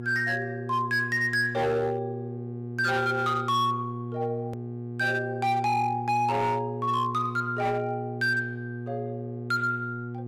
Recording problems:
distorted audio; hard clipping, signal-to-distortion ratio 10 dB
electrical hum; 60 Hz, harmonics up to 720 Hz, SNR 8 dB
hard cut with a click; at 4.5 s

